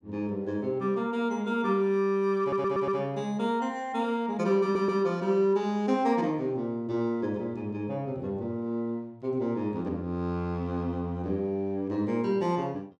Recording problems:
stutter; at 2.5 s and at 4.5 s

